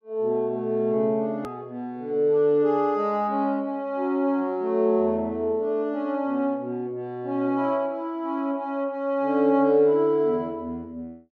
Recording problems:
hard cut with a click; at 1.5 s

